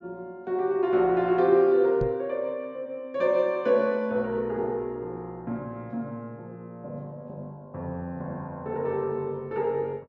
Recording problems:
treble missing; nothing above 8 kHz
knock on the microphone; at 2 s; peak 0 dB vs average level

